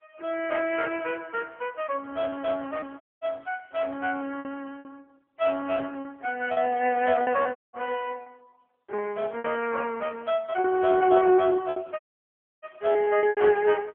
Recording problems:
phone line; 300 Hz to 3.3 kHz, AMR-NB
packet loss; 6% of the sound replaced, filled with repeated pitch periods
dropout; at 3 s, at 7.5 s and at 12 s for 0.5 s

